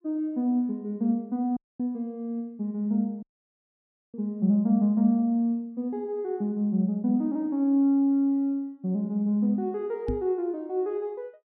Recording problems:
audio cutting out; at 1.5 s and at 3 s for 1 s
microphone bump; at 10 s; peak 0 dB vs average level

